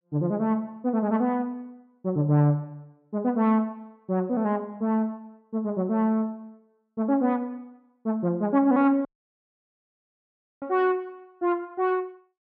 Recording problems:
audio cutting out; at 9 s for 1.5 s

